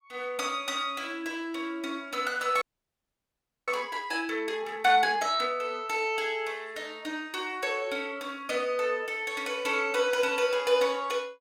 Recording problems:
frozen audio; at 2.5 s for 1 s

